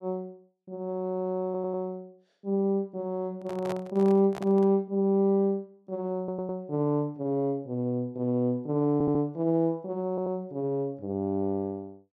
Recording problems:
audio stuttering; 4 times, first at 1.5 s
handling noise; from 3.5 to 4.5 s; peak -5 dB vs average level

